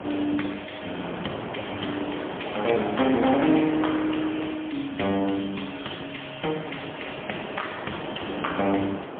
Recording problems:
phone line; 170 Hz to 3.4 kHz, AMR-NB, then MP3
wind noise; below 1.1 kHz, SNR 8 dB

